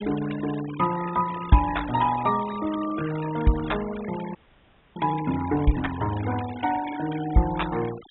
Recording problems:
low-pass filter; nothing above 3.8 kHz
denoising artefacts; signal-to-artefact ratio 14 dB
audio freezing; at 4.5 s for 0.5 s

